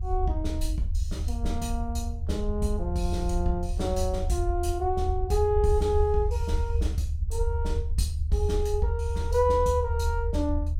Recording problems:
rumble; below 76 Hz, SNR 1 dB

